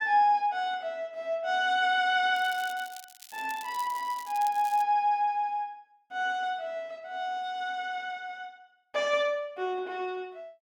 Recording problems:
crackle; from 2.5 to 5 s; loose cable, SNR 18 dB

